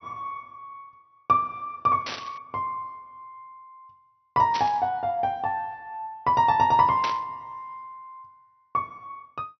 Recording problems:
treble missing; nothing above 6 kHz
burst of static; at 2 s, at 4.5 s and at 7 s; peak -2 dB vs average level

